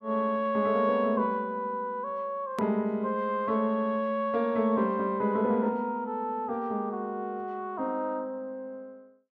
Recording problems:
click at an edit; at 2.5 s

